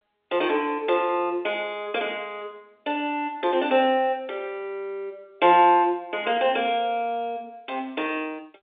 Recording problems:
phone line; 280 Hz to 3.7 kHz, G.711

